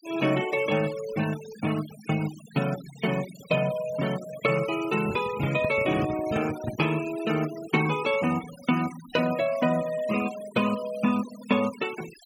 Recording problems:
noise reduction artefacts; signal-to-artefact ratio 15 dB
microphone handling noise; from 5 to 7 s; peak 0 dB vs average level

